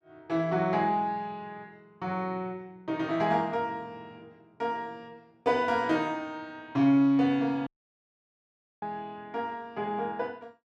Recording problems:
dropout; at 7.5 s for 1 s

